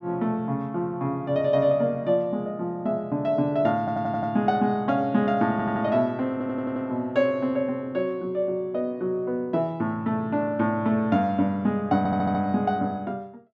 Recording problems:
stutter; 4 times, first at 4 s

